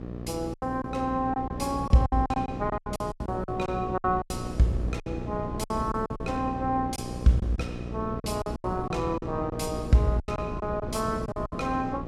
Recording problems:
hum; 60 Hz, harmonics up to 1.3 kHz, SNR 9 dB
wind on the microphone; below 370 Hz, SNR 10 dB
lost packets; 13% of the sound replaced, filled with silence

